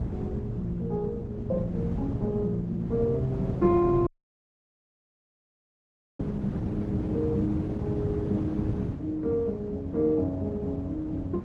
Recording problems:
lossy codec; Opus, then Opus, log-spectral distance 2 dB
rumble; below 210 Hz, SNR 3 dB
audio cutting out; at 4 s for 2 s

